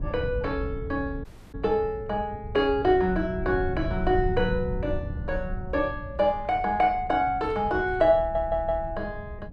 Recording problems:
wind noise; below 120 Hz, SNR 10 dB
audio cutting out; at 1 s
audio stuttering; at 8 s

